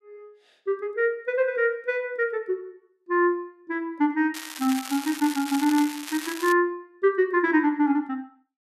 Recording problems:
crackle; from 4.5 to 6.5 s; loose cable, SNR 11 dB

